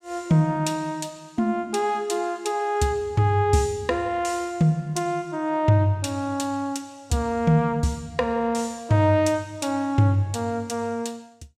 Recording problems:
none

